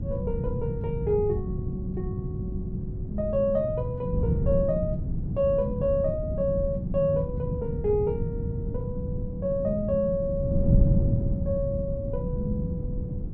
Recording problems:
wind on the microphone; below 170 Hz, SNR 1 dB

